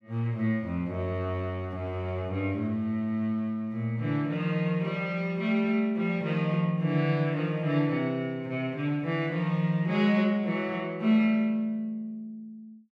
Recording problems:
none

